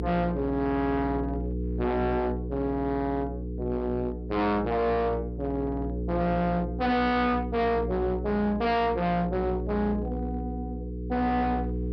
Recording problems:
low-pass filter; nothing above 5.5 kHz
distorted audio; hard clipping, signal-to-distortion ratio 8 dB
mains hum; 60 Hz, harmonics up to 480 Hz, SNR 6 dB

